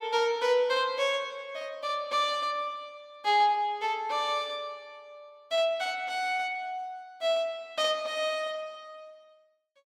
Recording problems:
none

